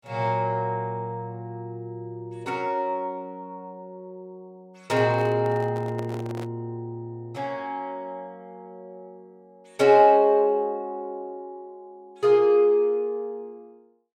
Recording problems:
microphone handling noise; from 5 to 6.5 s; peak -10 dB vs average level

